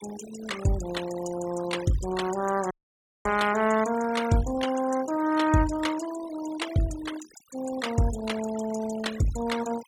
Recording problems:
denoising artefacts; signal-to-artefact ratio 13 dB
audio cutting out; at 2.5 s for 0.5 s

